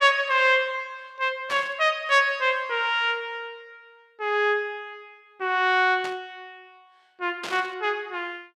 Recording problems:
burst of static; at 1.5 s, at 6 s and at 7.5 s; peak -6 dB vs average level

